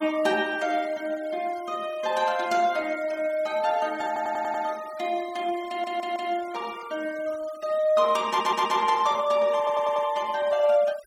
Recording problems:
denoising artefacts; signal-to-artefact ratio 21 dB
audio stuttering; 4 times, first at 4 s

